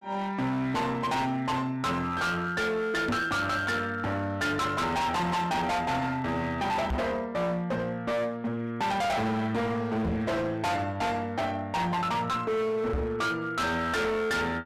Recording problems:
distorted audio; hard clipping, signal-to-distortion ratio 6 dB
microphone thump; 4 times, first at 3 s; peak +3 dB vs average level

